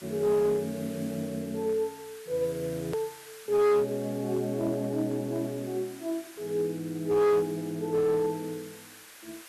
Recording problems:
distortion; hard clipping, uneven, signal-to-distortion ratio 11 dB
hiss; SNR 19 dB
edit click; at 3 s

